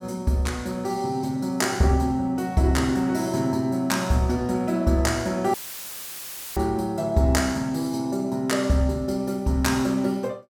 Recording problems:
dropout; at 5.5 s for 1 s; filled with static

